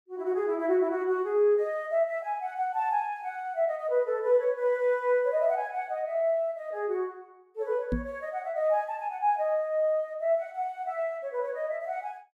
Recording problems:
microphone thump; at 8 s; peak +2 dB vs average level

